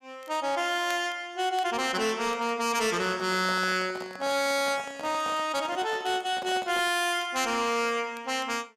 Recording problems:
distorted audio; hard clipping, signal-to-distortion ratio 11 dB
crackle; vinyl, SNR 27 dB
handling noise; from 3 to 7 s; peak -8 dB vs average level

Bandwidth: 14.5 kHz